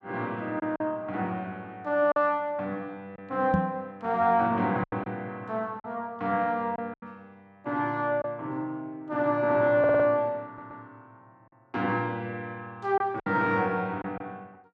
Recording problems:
packet loss; 4% of the sound replaced, filled with silence
microphone thump; at 3.5 s; peak +6 dB vs average level
audio stuttering; at 10 s

